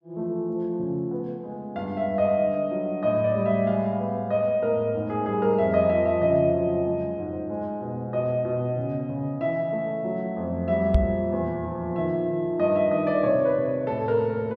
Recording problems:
knock on the microphone; at 11 s; peak +8 dB vs average level

